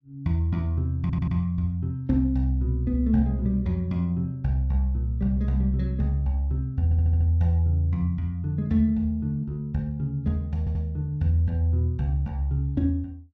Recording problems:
audio stuttering; at 1 s, at 7 s and at 11 s

